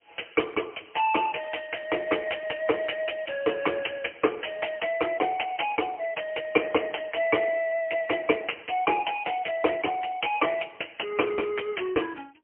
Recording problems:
telephone audio; 240 Hz to 3.1 kHz, AMR-NB, then MP3

